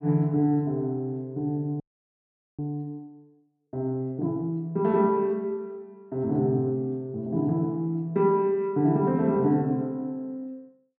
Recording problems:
frozen audio; at 2 s for 1 s

